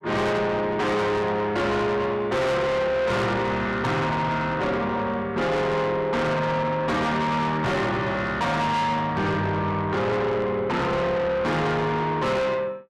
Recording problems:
distortion; soft clipping, signal-to-distortion ratio 7 dB

